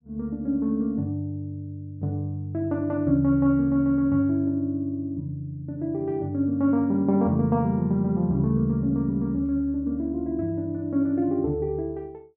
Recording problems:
none

